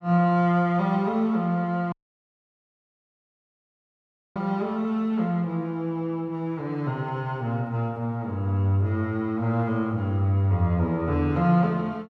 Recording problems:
audio cutting out; at 2 s for 2.5 s

